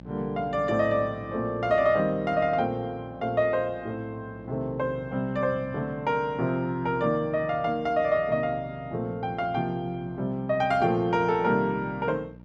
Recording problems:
hum; 60 Hz, harmonics up to 900 Hz, SNR 20 dB

